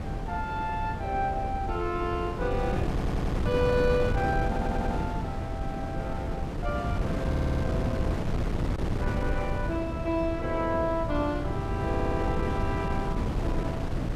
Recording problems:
wind on the microphone; below 280 Hz, SNR 0 dB
audio stuttering; 4 times, first at 3 s

